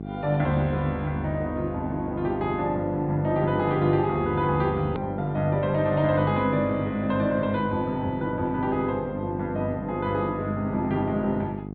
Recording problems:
low-pass filter; nothing above 4.3 kHz
electrical hum; 50 Hz, harmonics up to 850 Hz, SNR 9 dB
hard cut with a click; at 5 s

